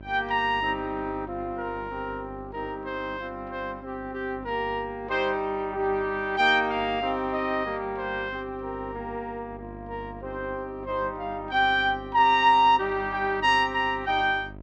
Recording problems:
hum; 50 Hz, harmonics up to 1 kHz, SNR 20 dB

